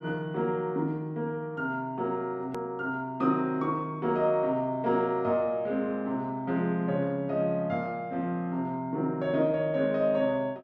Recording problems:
edit click; at 2.5 s

